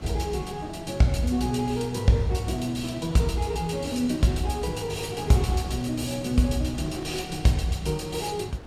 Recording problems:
wind on the microphone; below 550 Hz, SNR 16 dB

